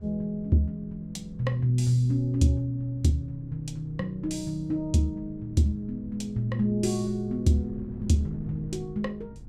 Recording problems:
wind noise; below 170 Hz, SNR 17 dB

